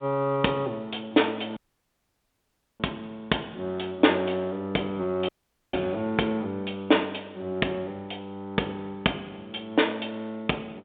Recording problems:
phone line; 240 Hz to 3.7 kHz, G.726
audio cutting out; at 1.5 s for 1 s and at 5.5 s

